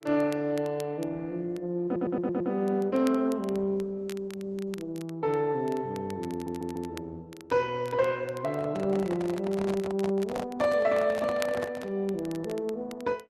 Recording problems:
codec artefacts; Opus, log-spectral distance 2 dB
crackle; vinyl, SNR 21 dB
stutter; at 2 s and at 6.5 s
handling noise; from 8.5 to 12 s; peak -3 dB vs average level

